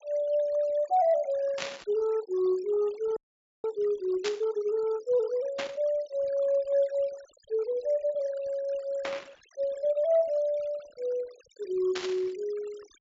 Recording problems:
low-pass filter; nothing above 7.4 kHz
denoising artefacts; signal-to-artefact ratio 24 dB
static burst; 5 times, first at 1.5 s; peak 0 dB vs average level
audio freezing; at 3 s

